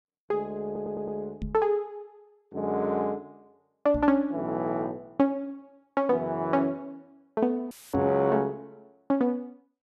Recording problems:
stutter; at 0.5 s
microphone bump; at 1.5 s, at 4 s and at 8 s; peak -2 dB vs average level
audio cutting out; at 7.5 s; filled with static

